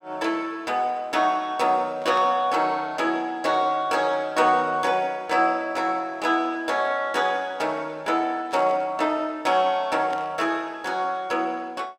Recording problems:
static burst; at 2 s, at 8.5 s and at 10 s; peak -11 dB vs average level

